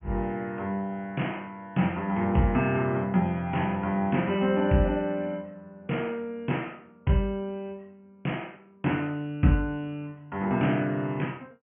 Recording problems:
treble missing; nothing above 3.1 kHz

